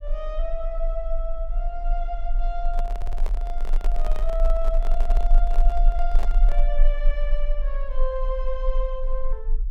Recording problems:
low-frequency rumble; below 34 Hz, strongest tone 20 Hz, SNR -7 dB
microphone handling noise; from 2.5 to 6.5 s; peak +1 dB vs average level
stutter; at 3 s

